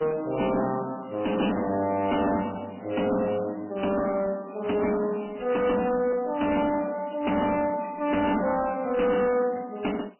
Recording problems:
lossy compression; MP3, log-spectral distance 8 dB, nothing above 3 kHz
distorted audio; soft clipping, signal-to-distortion ratio 10 dB

